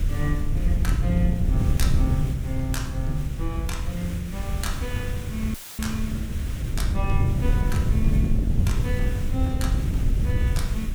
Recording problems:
background hiss; SNR 11 dB
low-frequency rumble; below 60 Hz, SNR 6 dB
wind noise; below 110 Hz, SNR -4 dB
audio cutting out; at 5.5 s; filled with static

